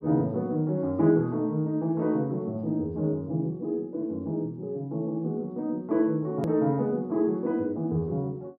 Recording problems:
hard cut with a click; at 6.5 s

